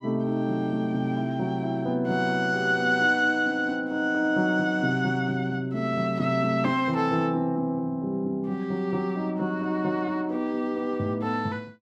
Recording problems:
none

